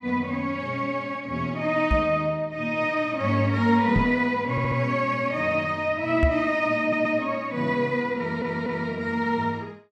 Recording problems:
microphone bump; at 2 s, at 4 s and at 6 s; peak +5 dB vs average level
audio stuttering; at 4.5 s, at 7 s and at 8 s

